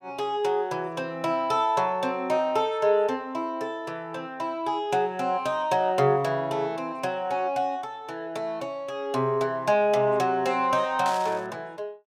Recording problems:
burst of static; at 11 s; peak -7 dB vs average level

